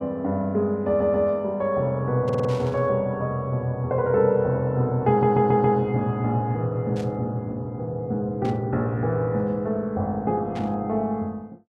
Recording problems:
stutter; at 1 s, at 2 s and at 5 s
burst of static; 4 times, first at 2.5 s; peak -14 dB vs average level

